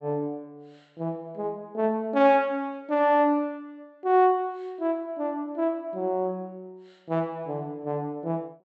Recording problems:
low-pass filter; nothing above 7.9 kHz

